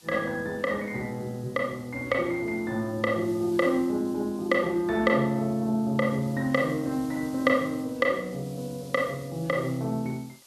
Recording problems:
background hiss; SNR 24 dB

